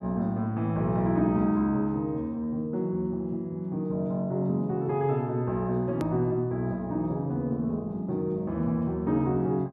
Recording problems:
click at an edit; at 6 s

